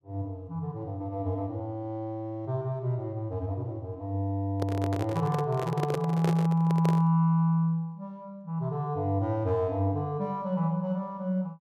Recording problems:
handling noise; from 4.5 to 7 s; peak +1 dB vs average level

